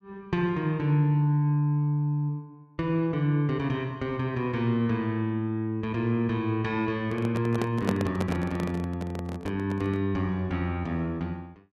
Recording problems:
microphone handling noise; from 7 to 10 s; peak +4 dB vs average level

